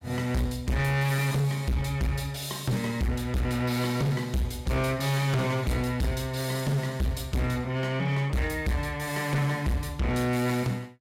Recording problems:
distorted audio; hard clipping, signal-to-distortion ratio 6 dB

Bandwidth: 16 kHz